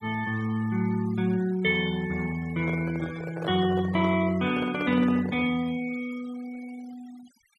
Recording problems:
noise reduction artefacts; signal-to-artefact ratio 21 dB
handling noise; from 2.5 to 5.5 s; peak -5 dB vs average level

